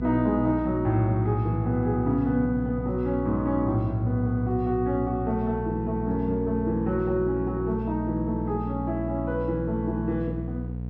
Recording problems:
hum; 60 Hz, harmonics up to 540 Hz, SNR 6 dB

